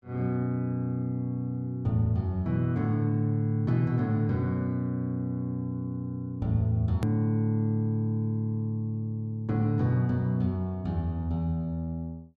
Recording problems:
edit click; at 7 s

